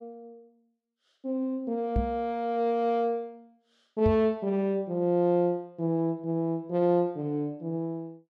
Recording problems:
microphone thump; at 2 s and at 4 s; peak +3 dB vs average level

